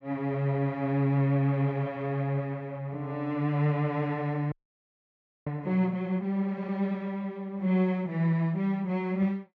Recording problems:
frozen audio; at 4.5 s for 1 s

